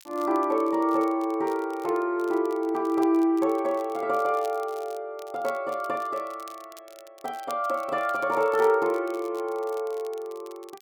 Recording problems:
crackling; vinyl, SNR 25 dB

